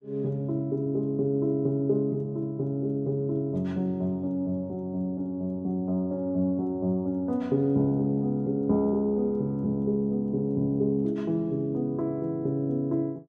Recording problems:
none

